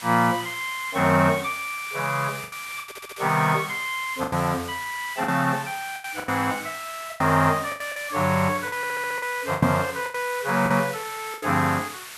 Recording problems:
hiss; SNR 13 dB
lost packets; 9% of the sound replaced, filled with the last packet
stutter; at 3 s and at 9 s
microphone thump; at 9.5 s; peak +5 dB vs average level

